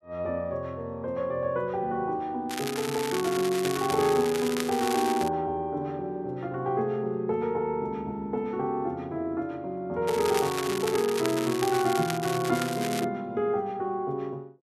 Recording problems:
crackle; from 2.5 to 5.5 s and from 10 to 13 s; loose cable, SNR 7 dB

